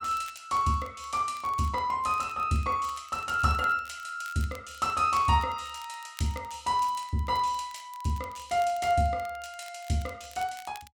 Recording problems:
crackle; vinyl, SNR 23 dB

